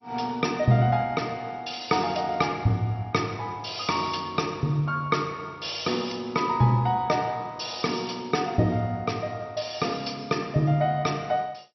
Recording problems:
codec artefacts; MP2, log-spectral distance 6 dB, nothing above 5.8 kHz

